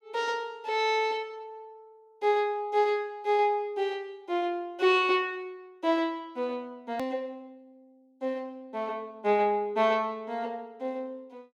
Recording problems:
click at an edit; at 7 s

